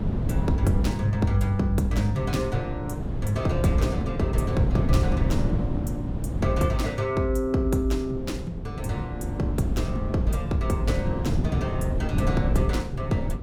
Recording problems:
wind on the microphone; below 190 Hz, SNR 2 dB

